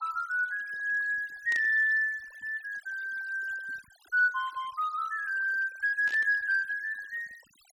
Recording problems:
noise reduction artefacts; signal-to-artefact ratio 24 dB
burst of static; at 1.5 s and at 6 s; peak -10 dB vs average level

